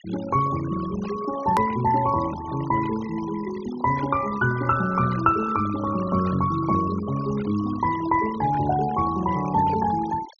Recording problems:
treble cut off; nothing above 6.6 kHz
denoising artefacts; signal-to-artefact ratio 15 dB
hard cut with a click; at 1.5 s

